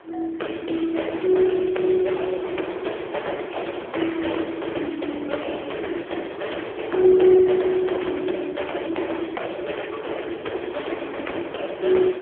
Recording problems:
telephone audio; 280 Hz to 3.4 kHz, AMR-NB
distorted audio; hard clipping, uneven, signal-to-distortion ratio 9 dB
wind noise; below 1.4 kHz, SNR 18 dB

